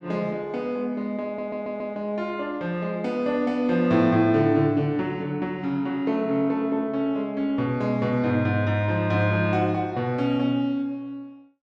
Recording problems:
stutter; at 1 s

